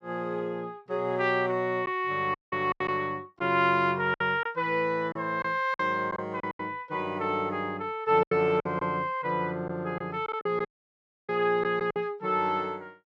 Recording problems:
packet loss; 6% of the sound replaced, filled with silence
audio cutting out; at 2.5 s and at 11 s for 0.5 s

